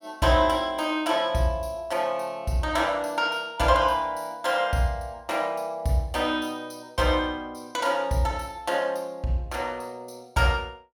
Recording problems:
none

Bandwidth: 17 kHz